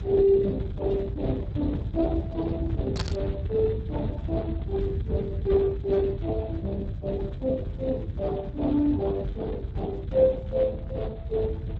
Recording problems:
codec artefacts; Speex, log-spectral distance 2 dB
low-frequency rumble; below 130 Hz, SNR 6 dB
burst of static; at 3 s; peak +1 dB vs average level

